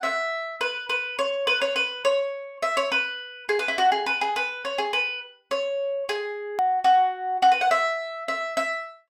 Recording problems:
hard cut with a click; at 6.5 s

